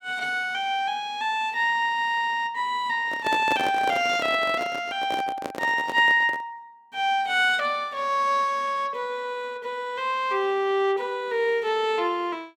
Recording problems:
handling noise; from 3 to 6.5 s; peak -1 dB vs average level

